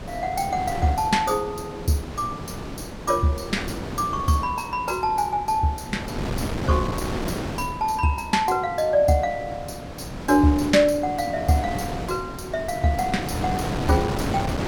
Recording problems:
wind noise; below 700 Hz, SNR 8 dB

